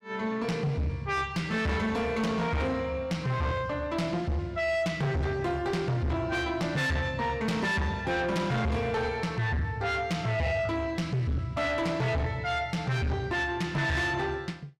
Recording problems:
distorted audio; soft clipping, signal-to-distortion ratio 6 dB

